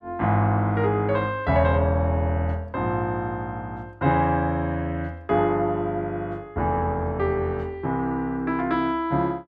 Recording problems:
none

